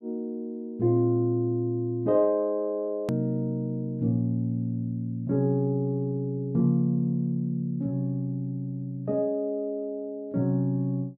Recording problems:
edit click; at 3 s

